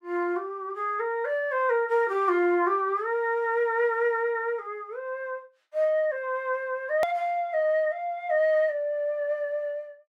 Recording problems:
hard cut with a click; at 7 s

